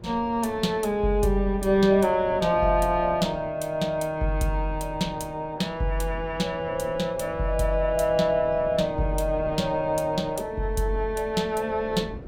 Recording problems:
wind on the microphone; below 350 Hz, SNR 17 dB

